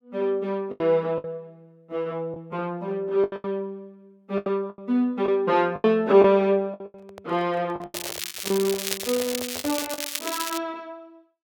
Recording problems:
packet loss; 10% of the sound replaced, filled with the last packet
handling noise; from 7 to 10 s; peak -9 dB vs average level
crackle; from 8 to 11 s; loose cable, SNR 5 dB

